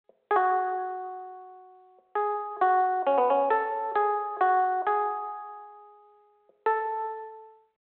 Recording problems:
telephone audio; 320 Hz to 3.5 kHz, G.726

